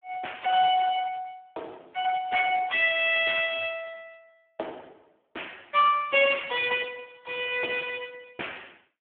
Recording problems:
telephone audio; 320 Hz to 3.5 kHz, Speex

